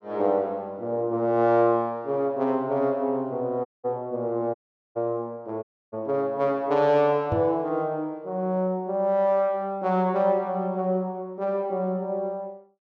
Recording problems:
dropout; at 3.5 s, at 4.5 s and at 5.5 s
microphone thump; at 7.5 s; peak 0 dB vs average level

